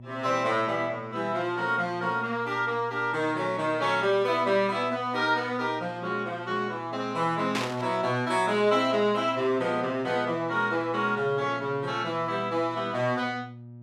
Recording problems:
electrical hum; 60 Hz, harmonics up to 600 Hz, SNR 18 dB
static burst; at 7.5 s; peak 0 dB vs average level

